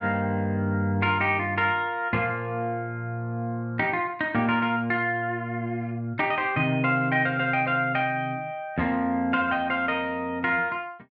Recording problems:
none

